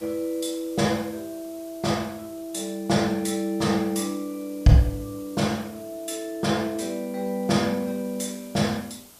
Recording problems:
hiss; SNR 21 dB

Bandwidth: 14.5 kHz